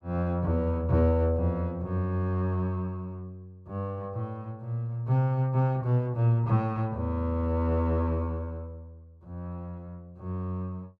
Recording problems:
none

